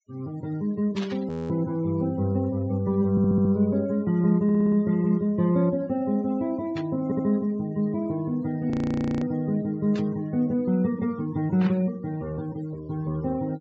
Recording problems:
treble cut off; nothing above 8 kHz
denoising artefacts; signal-to-artefact ratio 25 dB
static burst; 4 times, first at 1 s; peak -8 dB vs average level
audio freezing; at 1.5 s and at 8.5 s for 0.5 s
audio stuttering; at 3 s, at 4.5 s and at 7 s

